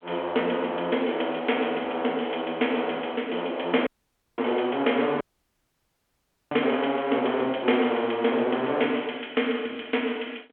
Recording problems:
telephone audio; 280 Hz to 3.3 kHz, G.726
dropout; at 4 s for 0.5 s and at 5 s for 1.5 s

